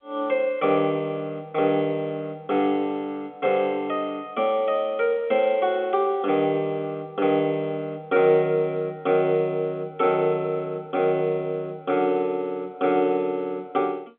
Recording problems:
phone line; 220 Hz to 3.4 kHz, G.711

